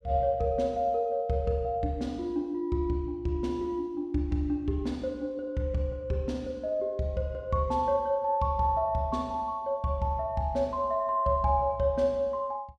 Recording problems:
none

